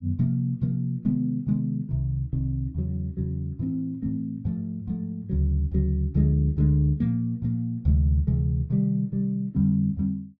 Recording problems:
none

